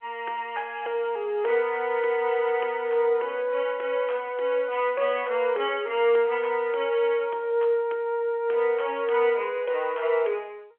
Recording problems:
telephone audio; 340 Hz to 3.4 kHz, G.711

